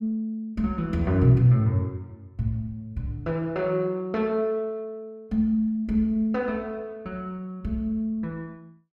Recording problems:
none

